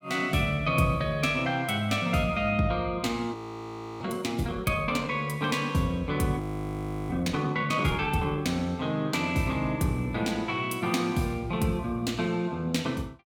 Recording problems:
audio freezing; at 3.5 s for 0.5 s and at 6.5 s for 0.5 s

